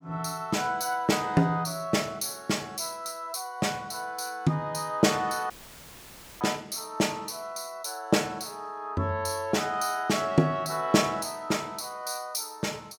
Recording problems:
dropout; at 5.5 s for 1 s; filled with static

